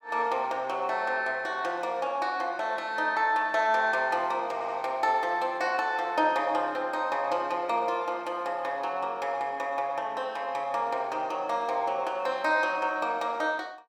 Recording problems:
stutter; at 4.5 s

